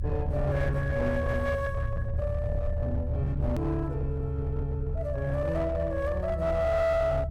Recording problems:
distortion; hard clipping, uneven, signal-to-distortion ratio 11 dB
low-frequency rumble; below 96 Hz, strongest tone 74 Hz, SNR 3 dB
edit click; at 3.5 s

